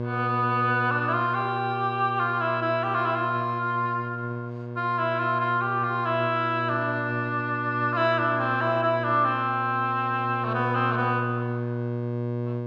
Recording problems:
hum; 60 Hz, harmonics up to 1.1 kHz, SNR 7 dB

